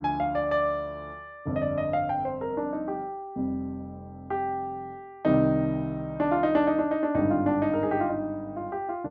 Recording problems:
none

